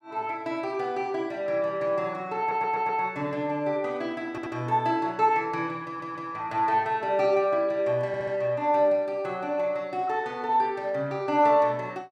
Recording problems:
audio stuttering; 4 times, first at 2.5 s

